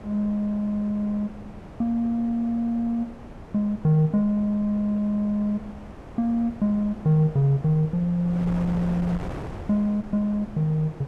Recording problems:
wind noise; below 560 Hz, SNR 15 dB

